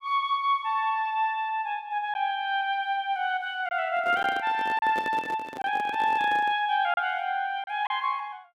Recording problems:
lost packets; 2% of the sound replaced, filled with silence
handling noise; from 4 to 6.5 s; peak -4 dB vs average level

